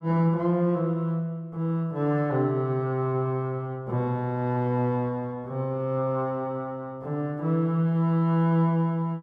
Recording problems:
none

